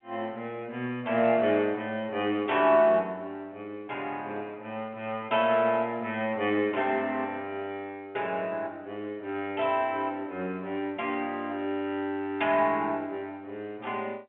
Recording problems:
phone line; 190 Hz to 3.3 kHz, G.711

